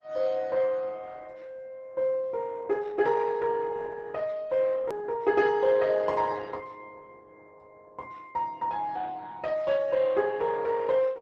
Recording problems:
lossy compression; Opus, log-spectral distance 3 dB
edit click; at 5 s

